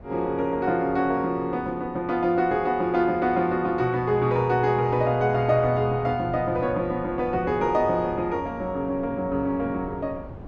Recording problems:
wind on the microphone; below 410 Hz, SNR 18 dB

